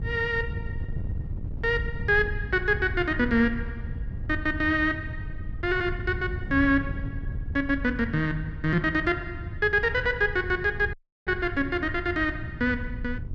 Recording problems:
wind on the microphone; below 120 Hz, SNR 9 dB
audio cutting out; at 11 s

